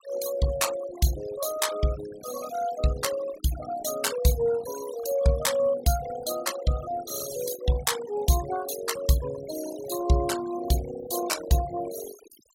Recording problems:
denoising artefacts; signal-to-artefact ratio 11 dB

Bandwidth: 16.5 kHz